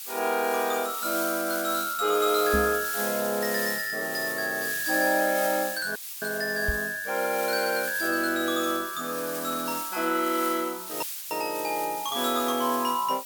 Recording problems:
hiss; slope +5 dB per octave, SNR 6 dB
microphone thump; at 2.5 s and at 6.5 s; peak +1 dB vs average level
audio cutting out; at 6 s and at 11 s

